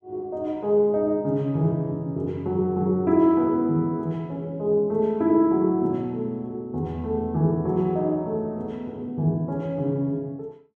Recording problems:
none

